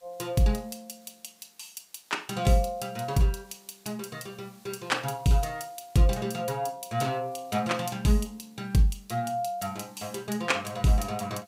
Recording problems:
background hiss; slope 0 dB per octave, SNR 29 dB

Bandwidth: 15.5 kHz